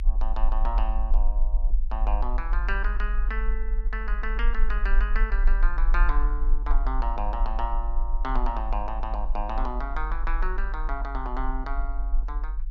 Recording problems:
rumble; below 44 Hz, strongest tone 22 Hz, SNR -5 dB

